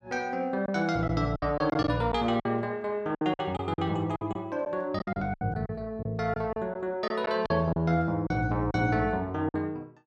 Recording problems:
lost packets; 10% of the sound replaced, filled with silence

